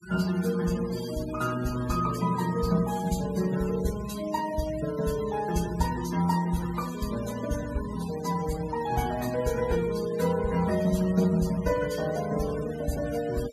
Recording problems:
noise reduction artefacts; signal-to-artefact ratio 15 dB

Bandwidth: 14.5 kHz